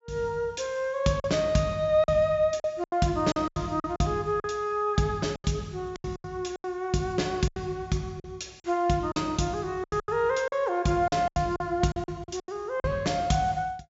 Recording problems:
treble missing; nothing above 7.5 kHz
lost packets; 11% of the sound replaced, filled with silence

